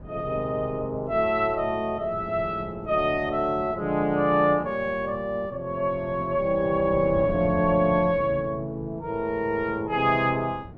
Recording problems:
wind noise; below 300 Hz, SNR 16 dB

